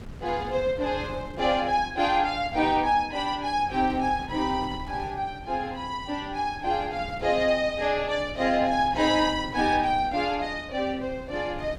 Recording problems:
wind noise; below 280 Hz, SNR 16 dB

